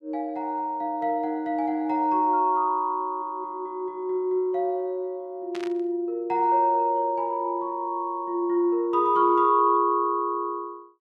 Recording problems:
burst of static; at 5.5 s; peak -10 dB vs average level

